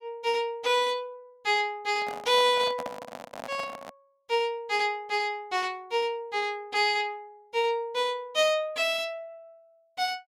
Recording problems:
microphone handling noise; from 2 to 4 s; peak -5 dB vs average level

